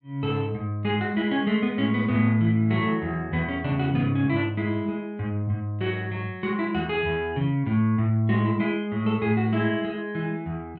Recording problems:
none

